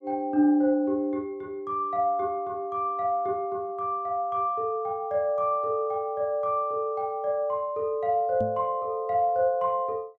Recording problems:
microphone bump; at 8.5 s; peak -4 dB vs average level

